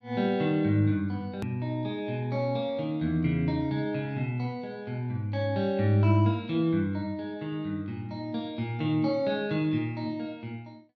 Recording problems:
click at an edit; at 1.5 s

